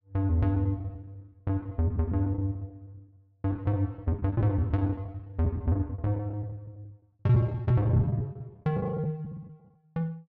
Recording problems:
lost packets; 16% of the sound replaced, filled with the last packet

